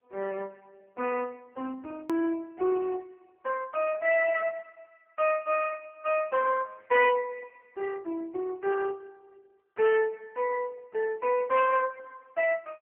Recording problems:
phone line; 340 Hz to 3.1 kHz, AMR-NB
distorted audio; hard clipping, signal-to-distortion ratio 12 dB
edit click; at 2 s

